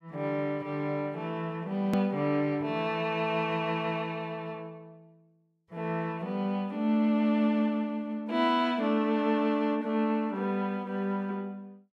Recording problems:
click at an edit; at 2 s

